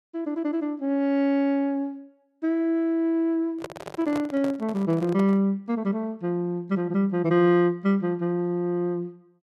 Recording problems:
microphone handling noise; from 3.5 to 5.5 s; peak -5 dB vs average level

